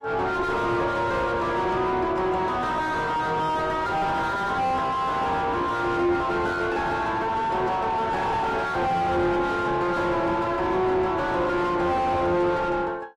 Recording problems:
lossy compression; AAC, log-spectral distance 2 dB, nothing above 14.7 kHz
distorted audio; soft clipping, signal-to-distortion ratio 4 dB

